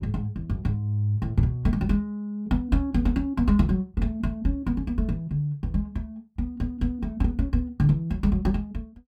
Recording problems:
none

